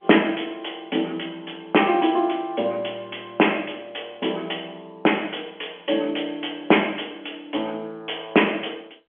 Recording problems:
phone line; 240 Hz to 3.3 kHz, G.711

